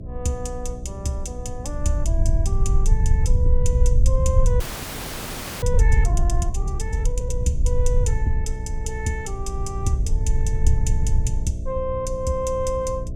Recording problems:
electrical hum; 60 Hz, harmonics up to 660 Hz, SNR 8 dB
rumble; below 72 Hz, SNR -5 dB
frozen audio; at 4.5 s for 1 s

